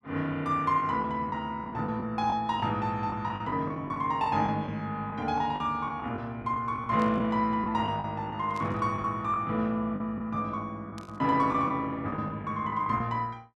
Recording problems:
packet loss; 9% of the sound replaced, filled with the last packet
static burst; at 7 s, at 8.5 s and at 11 s; peak -13 dB vs average level

